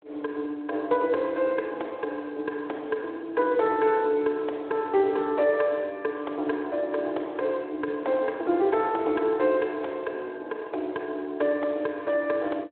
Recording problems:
telephone audio; 260 Hz to 3.7 kHz, Speex

